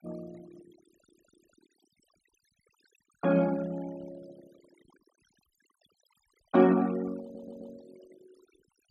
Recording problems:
noise reduction artefacts; signal-to-artefact ratio 23 dB
stutter; at 1 s and at 7 s

